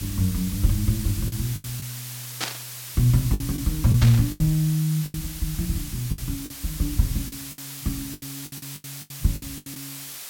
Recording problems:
hiss; slope +2 dB per octave, SNR 10 dB
lost packets; 11% of the sound replaced, filled with the last packet
burst of static; at 2.5 s and at 4 s; peak +2 dB vs average level

